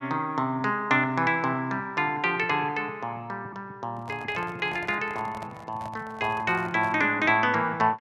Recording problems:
handling noise; from 4 to 7 s; peak -10 dB vs average level

